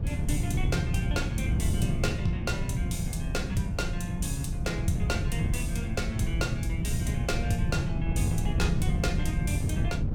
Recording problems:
wind on the microphone; below 150 Hz, SNR -2 dB

